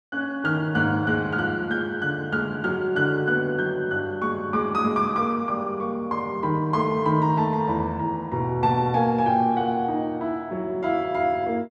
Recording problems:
none

